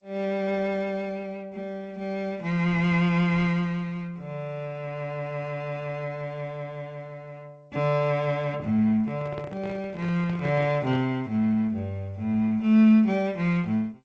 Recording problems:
lossy compression; Opus, then G.722, log-spectral distance 2 dB
microphone handling noise; from 9 to 11 s; peak -8 dB vs average level

